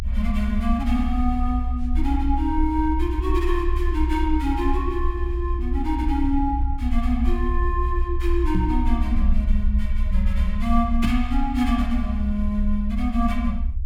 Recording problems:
rumble; below 62 Hz, strongest tone 24 Hz, SNR 0 dB
microphone bump; at 8.5 s and at 11 s; peak +5 dB vs average level

